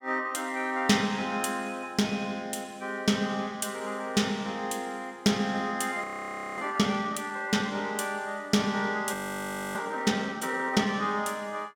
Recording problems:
frozen audio; at 6 s for 0.5 s and at 9 s for 0.5 s

